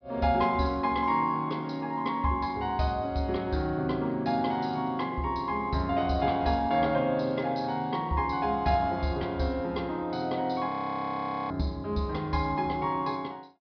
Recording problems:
low-pass filter; nothing above 5.5 kHz
audio freezing; at 11 s for 1 s

